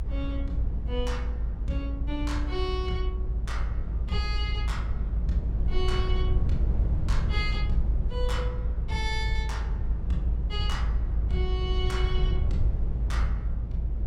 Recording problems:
low-frequency rumble; below 68 Hz, strongest tone 54 Hz, SNR -6 dB

